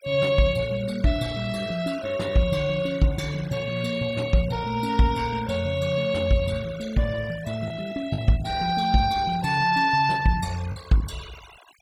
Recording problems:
noise reduction artefacts; signal-to-artefact ratio 19 dB
lost packets; 1% of the sound replaced, filled with the last packet

